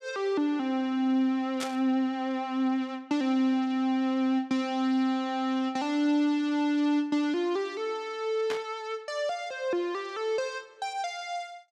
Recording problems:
burst of static; at 1.5 s and at 8.5 s; peak -2 dB vs average level

